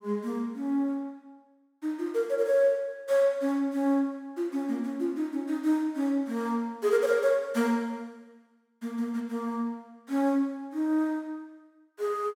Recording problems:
none

